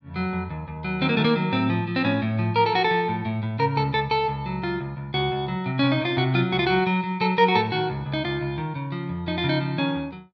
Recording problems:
none

